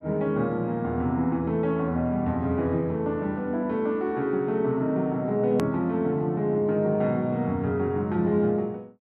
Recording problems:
click at an edit; at 5.5 s

